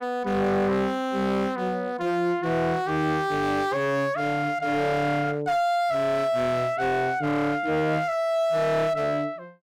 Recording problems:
distorted audio; hard clipping, signal-to-distortion ratio 10 dB

